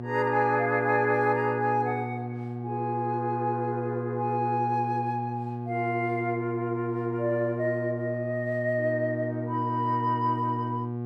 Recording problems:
hum; 60 Hz, harmonics up to 840 Hz, SNR 6 dB

